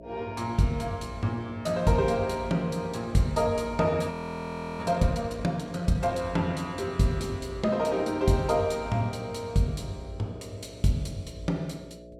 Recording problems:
electrical hum; 60 Hz, harmonics up to 660 Hz, SNR 18 dB
frozen audio; at 4 s for 0.5 s

